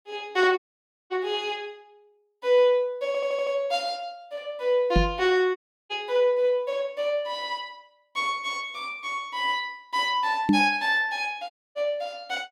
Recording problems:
audio cutting out; at 0.5 s for 0.5 s, at 5.5 s and at 12 s
stutter; at 3 s
microphone thump; at 5 s and at 10 s; peak +8 dB vs average level

